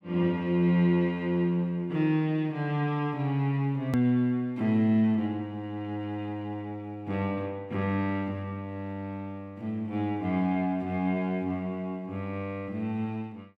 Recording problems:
click at an edit; at 4 s

